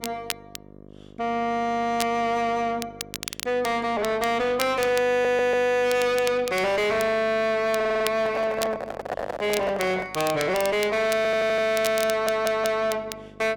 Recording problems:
distortion; soft clipping, signal-to-distortion ratio 7 dB
hum; 50 Hz, harmonics up to 1.2 kHz, SNR 23 dB
crackle; vinyl, SNR 13 dB
stutter; 4 times, first at 5 s
microphone handling noise; from 8 to 10 s; peak 0 dB vs average level

